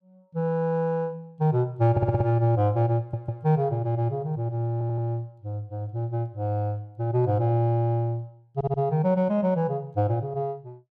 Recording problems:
audio stuttering; 4 times, first at 2 s

